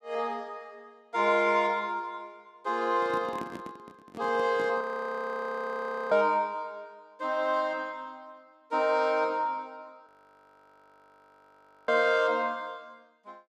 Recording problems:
microphone handling noise; from 3 to 5 s; peak -7 dB vs average level
audio freezing; at 5 s for 1.5 s and at 10 s for 2 s

